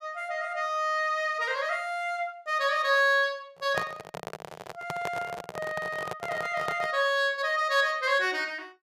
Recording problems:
microphone handling noise; from 3.5 to 7 s; peak 0 dB vs average level

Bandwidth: 15 kHz